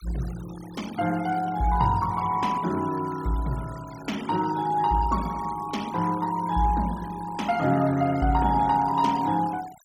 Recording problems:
noise reduction artefacts; signal-to-artefact ratio 19 dB

